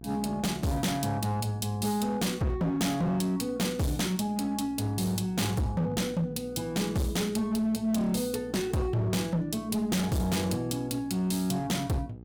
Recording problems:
distortion; hard clipping, uneven, signal-to-distortion ratio 6 dB
hum; 60 Hz, harmonics up to 840 Hz, SNR 20 dB

